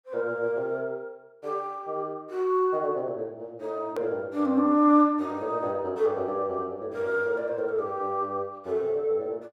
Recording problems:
click at an edit; at 4 s

